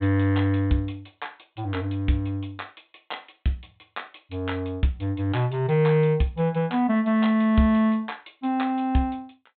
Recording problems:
treble cut off; nothing above 4 kHz

